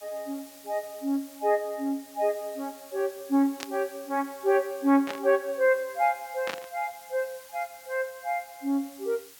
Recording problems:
background hiss; slope +1 dB per octave, SNR 20 dB
static burst; at 3.5 s, at 5 s and at 6.5 s; peak -1 dB vs average level

